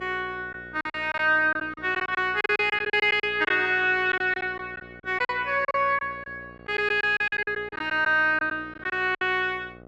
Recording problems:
electrical hum; 60 Hz, harmonics up to 1.4 kHz, SNR 23 dB
packet loss; 12% of the sound replaced, filled with silence

